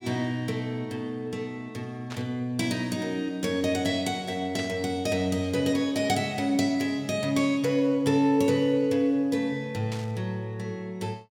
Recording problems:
burst of static; at 2 s, at 4.5 s and at 10 s; peak -7 dB vs average level

